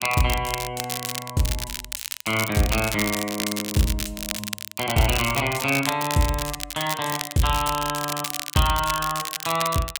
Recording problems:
crackle; vinyl, SNR 5 dB

